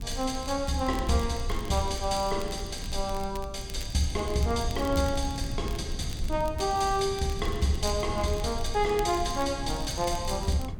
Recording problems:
background hiss; SNR 29 dB
rumble; below 72 Hz, SNR 9 dB
wind noise; below 170 Hz, SNR 13 dB
crackling; vinyl, SNR 19 dB

